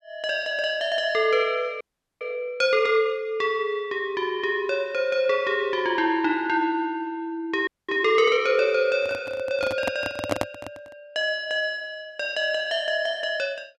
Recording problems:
audio freezing; at 2 s and at 7.5 s
handling noise; from 9 to 11 s; peak +4 dB vs average level

